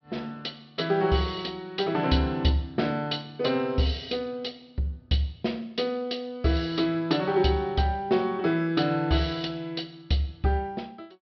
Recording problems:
treble cut off; nothing above 5.5 kHz

